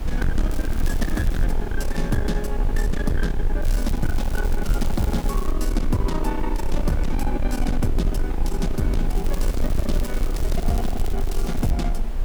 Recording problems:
distortion; soft clipping, signal-to-distortion ratio 6 dB
hiss; slope -7 dB per octave, SNR 12 dB
low-frequency rumble; below 48 Hz, strongest tone 20 Hz, SNR 0 dB
crackle; at 0.5 s, from 3.5 to 5.5 s and from 9 to 12 s; loose cable, SNR 15 dB

